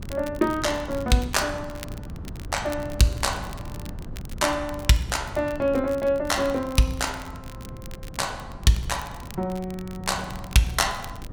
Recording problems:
wind noise; below 190 Hz, SNR 13 dB
crackle; vinyl, SNR 21 dB

